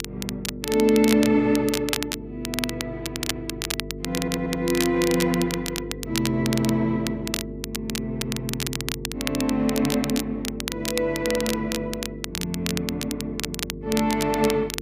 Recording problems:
hum; 50 Hz, harmonics up to 450 Hz, SNR 12 dB
crackling; vinyl, SNR 6 dB
stutter; at 3 s and at 4 s

